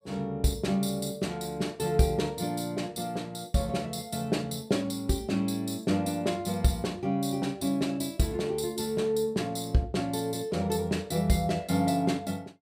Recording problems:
none

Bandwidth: 15.5 kHz